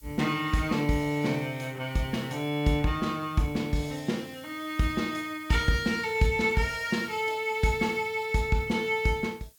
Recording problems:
background hiss; SNR 25 dB

